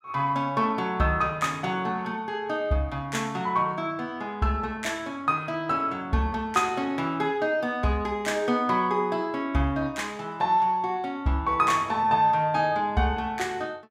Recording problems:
none

